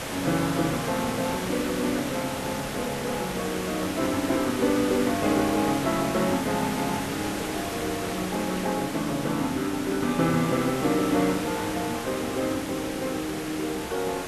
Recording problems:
background hiss; slope -4 dB per octave, SNR 5 dB

